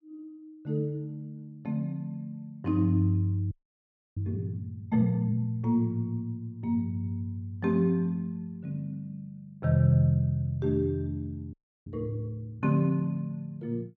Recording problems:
audio freezing; at 3.5 s for 0.5 s and at 12 s

